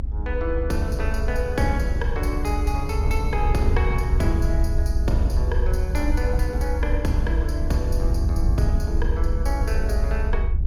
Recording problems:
rumble; below 74 Hz, SNR -3 dB
wind noise; below 120 Hz, SNR 11 dB

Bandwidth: 18 kHz